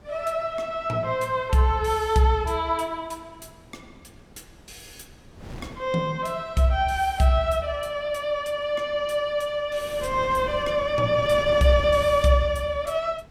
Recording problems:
wind on the microphone; below 470 Hz, SNR 19 dB

